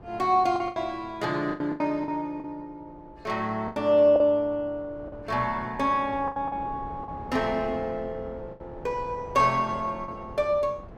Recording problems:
wind on the microphone; below 540 Hz, SNR 18 dB
lost packets; 7% of the sound replaced, filled with the last packet

